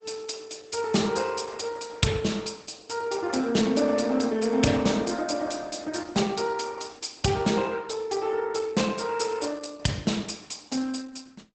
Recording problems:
lossy compression; Opus, log-spectral distance 6 dB, nothing above 8 kHz

